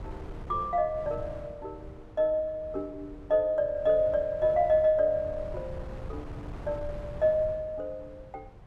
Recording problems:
wind on the microphone; below 200 Hz, SNR 16 dB

